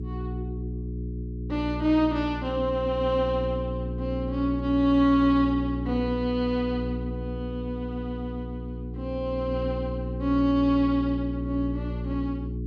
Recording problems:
hum; 60 Hz, harmonics up to 420 Hz, SNR 7 dB

